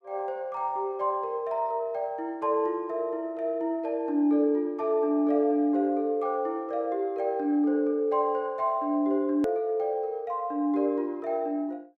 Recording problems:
edit click; at 9.5 s

